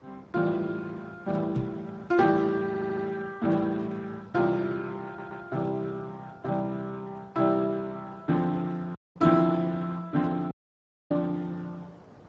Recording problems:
lossy compression; Speex, log-spectral distance 3 dB, nothing above 7.3 kHz
hiss; SNR 24 dB
microphone bump; at 1.5 s; peak -1 dB vs average level
stutter; at 2.5 s and at 5 s
audio cutting out; at 9 s and at 11 s for 0.5 s

